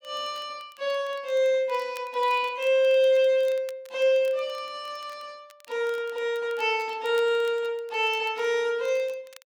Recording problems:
crackle; vinyl, SNR 28 dB

